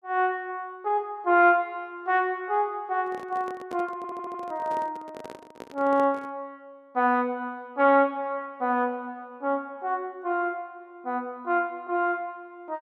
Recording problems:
handling noise; from 3 to 6.5 s; peak -9 dB vs average level
stutter; at 4 s

